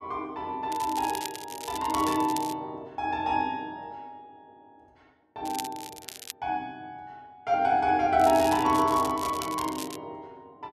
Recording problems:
crackle; from 0.5 to 2.5 s, at 5.5 s and from 8 to 10 s; loose cable, SNR 12 dB

